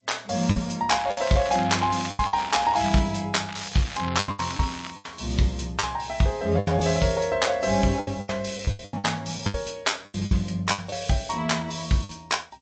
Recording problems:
codec artefacts; G.722, then MP3, log-spectral distance 7 dB, nothing above 7.6 kHz
lost packets; 11% of the sound replaced, filled with the last packet
crackling; from 1 to 3 s and from 3.5 to 5 s; loose cable, SNR 14 dB

